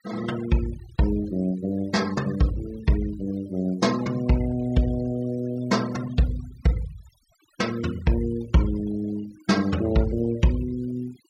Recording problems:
noise reduction artefacts; signal-to-artefact ratio 18 dB

